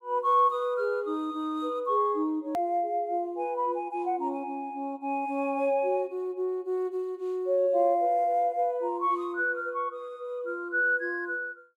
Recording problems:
click at an edit; at 2.5 s

